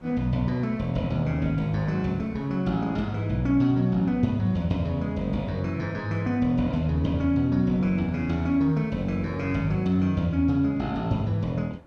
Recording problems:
wind noise; below 810 Hz, SNR 27 dB

